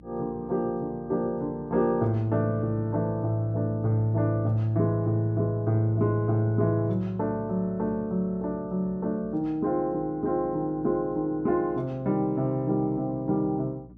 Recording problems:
hum; 60 Hz, harmonics up to 300 Hz, SNR 23 dB

